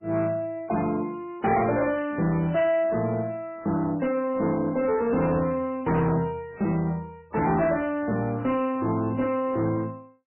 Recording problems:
lossy codec; MP3, log-spectral distance 2 dB, nothing above 2.7 kHz
distortion; soft clipping, signal-to-distortion ratio 10 dB

